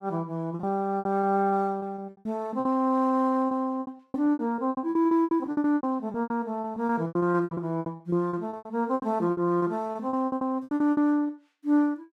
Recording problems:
packet loss; 22% of the sound replaced, filled with repeated pitch periods

